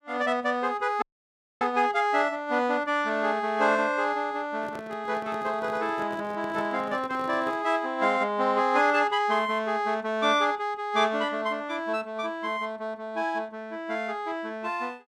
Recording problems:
audio cutting out; at 1 s for 0.5 s
handling noise; from 4.5 to 7.5 s; peak -10 dB vs average level

